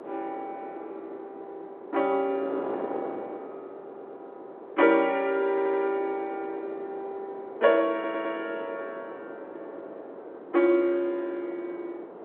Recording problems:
telephone audio; 300 Hz to 3.4 kHz, G.711
wind on the microphone; below 660 Hz, SNR 13 dB
audio stuttering; at 4 s, at 5.5 s and at 8 s

